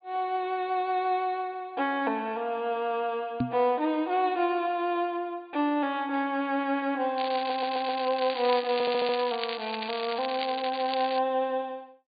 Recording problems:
treble cut off; nothing above 4.7 kHz
microphone thump; at 3.5 s; peak +4 dB vs average level
crackling; from 7 to 11 s; loose cable, SNR 8 dB
stutter; at 7.5 s and at 8.5 s

